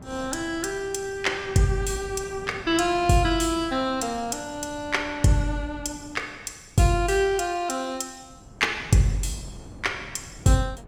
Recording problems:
wind on the microphone; below 330 Hz, SNR 19 dB

